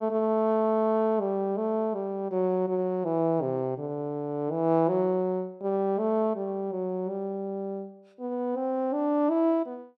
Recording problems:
none

